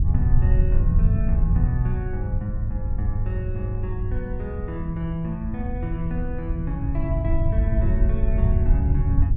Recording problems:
wind noise; below 86 Hz, SNR -5 dB

